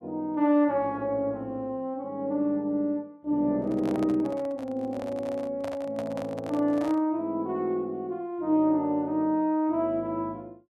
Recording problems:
microphone handling noise; from 3.5 to 7 s; peak -6 dB vs average level

